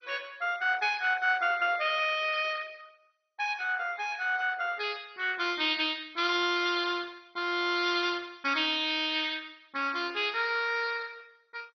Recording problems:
codec artefacts; MP2, log-spectral distance 6 dB, nothing above 4.9 kHz

